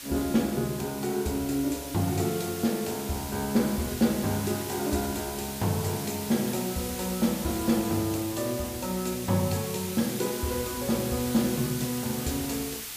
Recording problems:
hiss; slope +2 dB per octave, SNR 8 dB

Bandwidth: 15 kHz